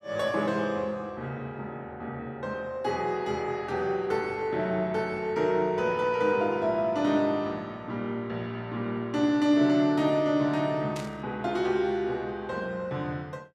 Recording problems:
burst of static; at 11 s; peak -8 dB vs average level

